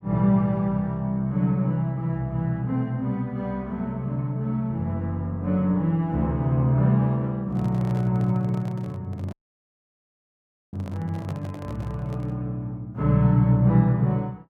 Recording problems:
microphone handling noise; from 7.5 to 12 s; peak -11 dB vs average level
audio cutting out; at 9.5 s for 1.5 s

